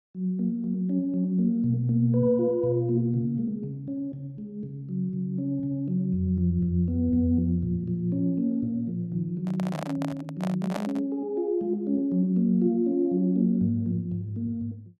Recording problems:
microphone handling noise; from 9.5 to 11 s; peak -2 dB vs average level

